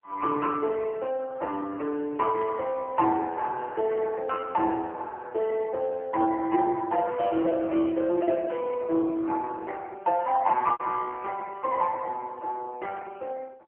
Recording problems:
telephone audio; 280 Hz to 3.1 kHz, AMR-NB
packet loss; 1.2% of the sound replaced, filled with repeated pitch periods

